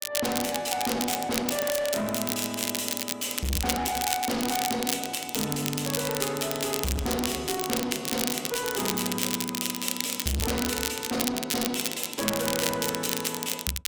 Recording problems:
distortion; soft clipping, signal-to-distortion ratio 6 dB
crackle; vinyl, SNR 1 dB

